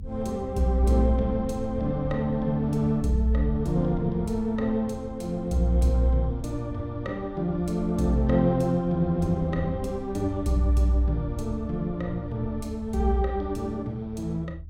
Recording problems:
rumble; below 78 Hz, SNR 13 dB

